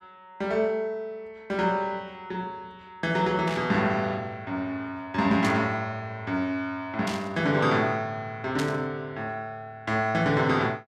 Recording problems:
static burst; 4 times, first at 3.5 s; peak -3 dB vs average level

